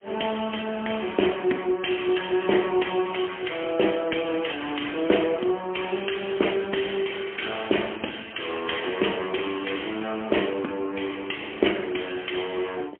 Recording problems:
phone line; 240 Hz to 3.3 kHz, AMR-NB, then MP3

